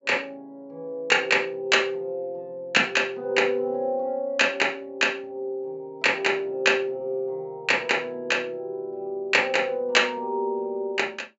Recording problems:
treble cut off; nothing above 8 kHz

